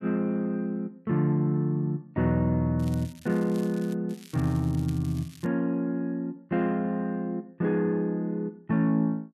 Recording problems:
crackle; from 3 to 4 s and from 4 to 5.5 s; loose cable, SNR 23 dB

